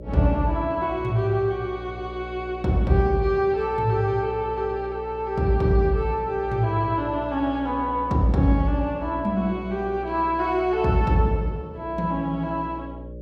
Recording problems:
electrical hum; 60 Hz, harmonics up to 600 Hz, SNR 14 dB

